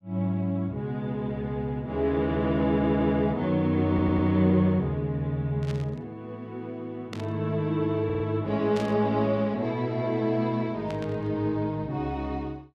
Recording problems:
audio stuttering; at 2.5 s, at 4 s and at 8 s
burst of static; 4 times, first at 5.5 s; peak -9 dB vs average level

